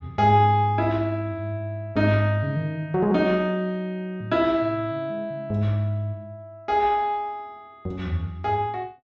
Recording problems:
treble missing; nothing above 8 kHz

